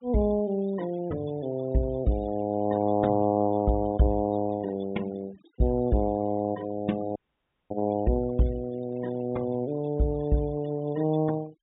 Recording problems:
treble cut off; nothing above 4 kHz
denoising artefacts; signal-to-artefact ratio 22 dB
dropout; at 7 s for 0.5 s

